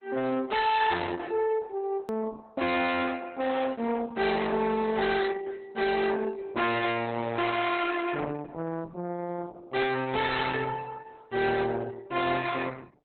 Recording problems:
codec artefacts; Opus, log-spectral distance 4 dB, nothing above 4.1 kHz
distortion; soft clipping, signal-to-distortion ratio 6 dB
click at an edit; at 2 s

